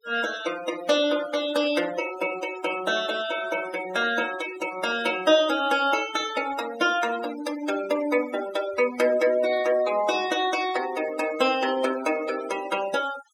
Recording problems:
denoising artefacts; signal-to-artefact ratio 13 dB

